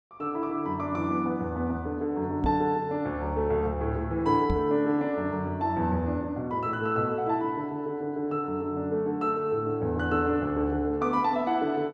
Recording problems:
microphone bump; at 2.5 s and at 4.5 s; peak +2 dB vs average level

